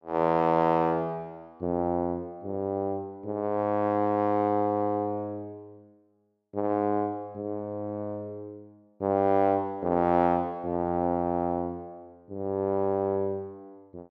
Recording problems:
none

